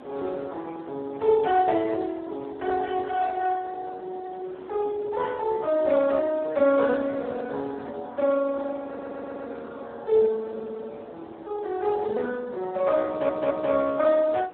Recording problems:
phone line; 260 Hz to 2 kHz, Speex
wind noise; below 770 Hz, SNR 21 dB
audio stuttering; at 9 s and at 13 s

